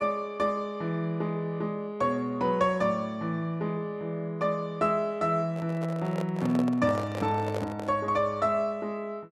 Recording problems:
handling noise; from 5.5 to 8 s; peak -2 dB vs average level

